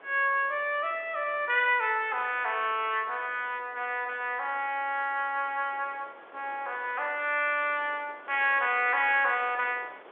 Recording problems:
phone line; 320 Hz to 3.6 kHz, G.711
wind noise; below 1.5 kHz, SNR 24 dB

